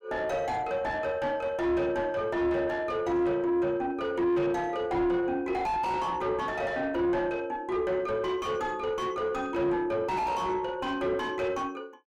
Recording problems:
distortion; soft clipping, signal-to-distortion ratio 5 dB

